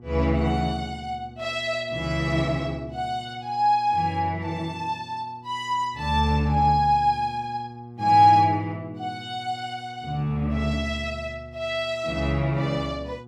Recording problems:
hum; 60 Hz, harmonics up to 840 Hz, SNR 19 dB

